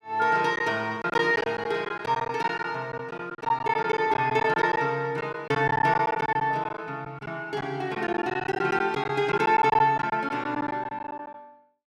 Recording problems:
packet loss; 11% of the sound replaced, filled with silence

